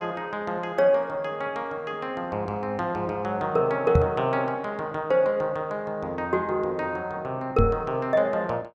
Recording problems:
microphone thump; at 4 s and at 7.5 s; peak +8 dB vs average level

